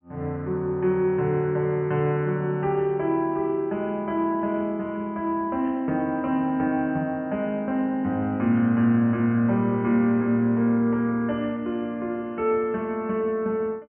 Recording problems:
low-pass filter; nothing above 3.1 kHz

